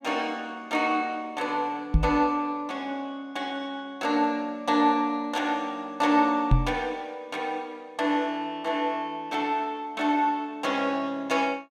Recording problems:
microphone bump; at 2 s and at 6.5 s; peak +9 dB vs average level

